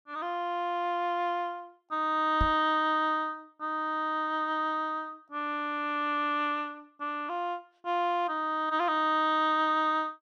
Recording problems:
microphone thump; at 2.5 s; peak +2 dB vs average level

